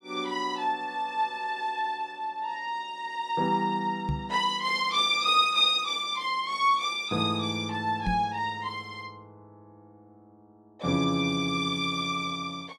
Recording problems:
microphone bump; at 4 s and at 8 s; peak +1 dB vs average level

